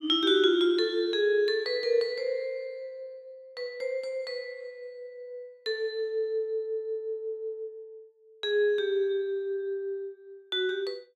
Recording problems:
none

